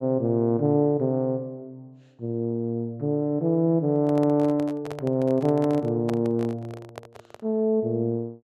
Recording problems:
microphone handling noise; from 4 to 7.5 s; peak -5 dB vs average level

